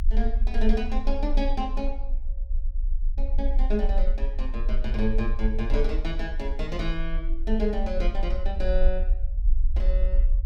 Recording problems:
low-frequency rumble; below 42 Hz, strongest tone 20 Hz, SNR -3 dB

